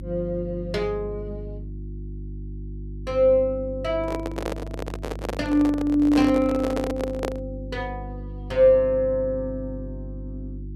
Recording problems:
hum; 50 Hz, harmonics up to 350 Hz, SNR 13 dB
microphone handling noise; from 4 to 7.5 s; peak 0 dB vs average level

